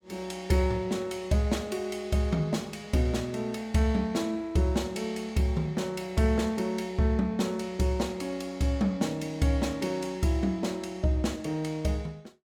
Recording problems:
none

